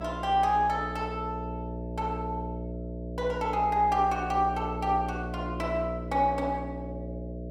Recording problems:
electrical hum; 60 Hz, harmonics up to 660 Hz, SNR 8 dB

